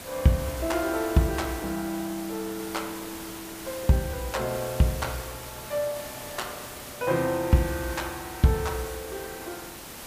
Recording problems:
hiss; slope -3 dB per octave, SNR 10 dB

